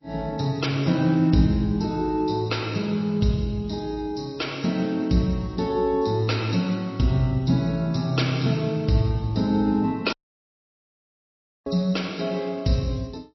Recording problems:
lossy codec; MP3, log-spectral distance 3 dB, nothing above 5.7 kHz
audio cutting out; at 10 s for 1.5 s

